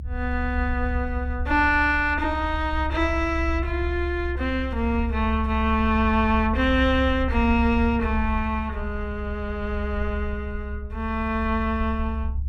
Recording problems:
rumble; below 70 Hz, strongest tone 68 Hz, SNR 5 dB

